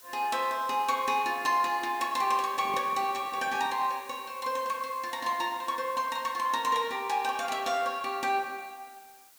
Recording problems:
background hiss; slope +1 dB per octave, SNR 21 dB
microphone handling noise; from 2.5 to 4 s; peak -9 dB vs average level

